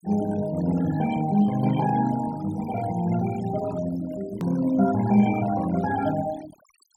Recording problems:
noise reduction artefacts; signal-to-artefact ratio 17 dB
edit click; at 4.5 s

